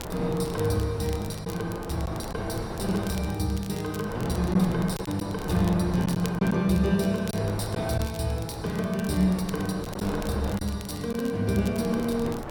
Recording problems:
hiss; slope -4 dB per octave, SNR 29 dB
wind on the microphone; below 810 Hz, SNR 10 dB
crackling; vinyl, SNR 18 dB
packet loss; 1.9% of the sound replaced, filled with silence

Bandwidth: 17 kHz